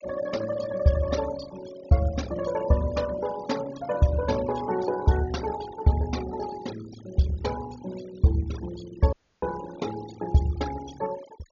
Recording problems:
treble missing; nothing above 6.9 kHz
denoising artefacts; signal-to-artefact ratio 16 dB
dropout; at 9 s

